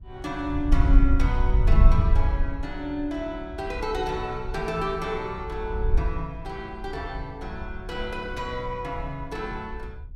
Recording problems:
wind noise; below 62 Hz, SNR -5 dB

